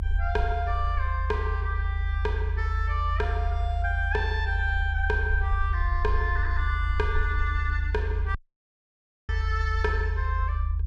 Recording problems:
low-frequency rumble; below 78 Hz, strongest tone 48 Hz, SNR -3 dB
dropout; at 8.5 s for 1 s

